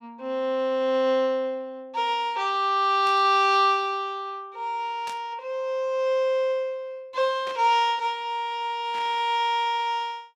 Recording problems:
burst of static; 4 times, first at 3 s; peak -11 dB vs average level

